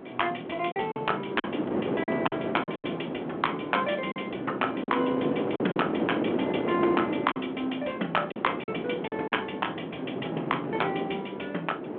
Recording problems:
telephone audio; 220 Hz to 3.4 kHz, G.726
wind noise; below 560 Hz, SNR 2 dB
lost packets; 6% of the sound replaced, filled with silence

